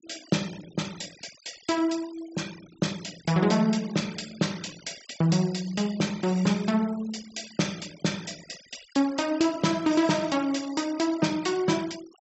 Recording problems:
treble cut off; nothing above 7.8 kHz
denoising artefacts; signal-to-artefact ratio 18 dB

